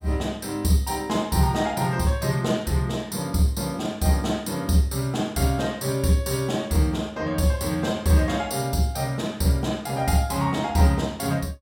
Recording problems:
none

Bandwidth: 17 kHz